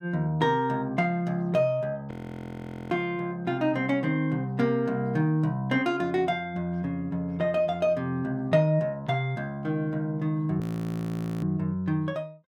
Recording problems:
frozen audio; at 2 s for 1 s and at 11 s for 1 s

